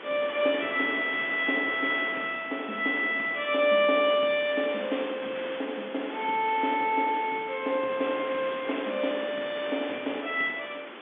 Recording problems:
telephone audio; 220 Hz to 3.5 kHz, G.711
background hiss; SNR 12 dB
crackling; at 5 s, from 7 to 9 s and at 9.5 s; loose cable, SNR 29 dB

